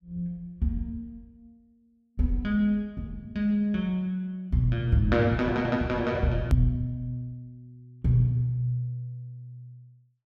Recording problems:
edit click; at 6.5 s

